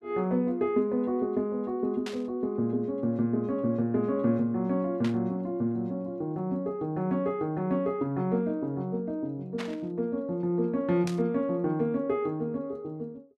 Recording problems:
static burst; 4 times, first at 2 s; peak -5 dB vs average level

